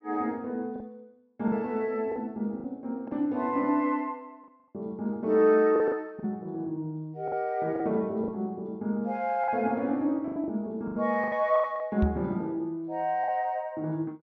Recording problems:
treble missing; nothing above 6.2 kHz
packet loss; 7% of the sound replaced, filled with the last packet
microphone bump; at 12 s; peak +5 dB vs average level

